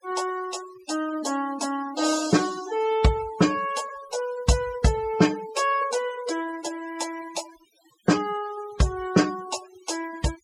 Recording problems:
noise reduction artefacts; signal-to-artefact ratio 14 dB

